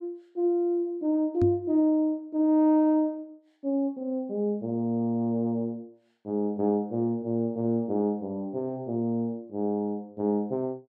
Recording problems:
knock on the microphone; at 1.5 s; peak +2 dB vs average level

